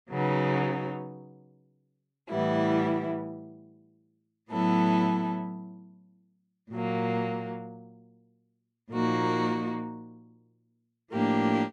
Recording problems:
none

